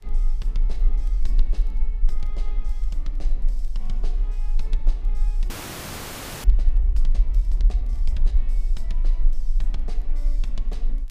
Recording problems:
hiss; SNR 23 dB
low-frequency rumble; below 38 Hz, strongest tone 20 Hz, SNR -18 dB
crackle; vinyl, SNR 24 dB
frozen audio; at 5.5 s for 1 s

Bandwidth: 15 kHz